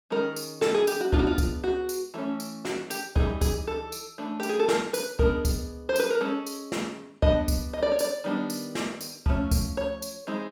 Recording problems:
none

